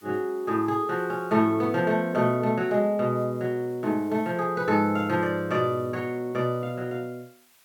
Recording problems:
hiss; SNR 30 dB

